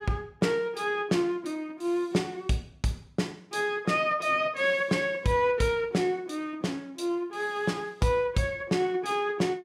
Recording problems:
none

